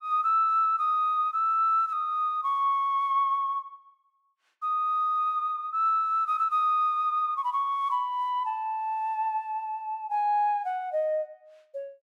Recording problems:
none

